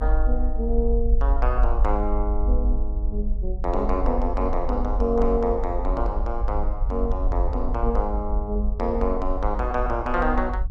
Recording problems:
rumble; below 50 Hz, strongest tone 22 Hz, SNR 0 dB

